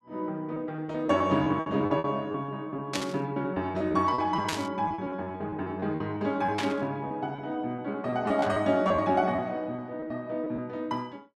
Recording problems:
lost packets; 12% of the sound replaced, filled with repeated pitch periods
static burst; 4 times, first at 3 s; peak +2 dB vs average level

